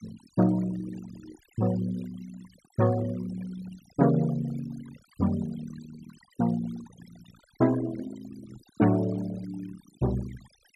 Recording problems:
denoising artefacts; signal-to-artefact ratio 17 dB

